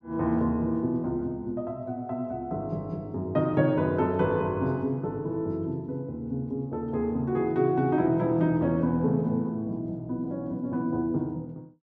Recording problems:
none

